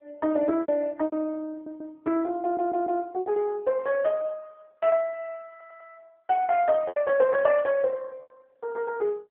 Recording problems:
phone line; 240 Hz to 3 kHz, AMR-NB
lost packets; 6% of the sound replaced, filled with repeated pitch periods
stutter; at 1.5 s, at 2.5 s and at 5.5 s
burst of static; at 7.5 s; peak -19 dB vs average level

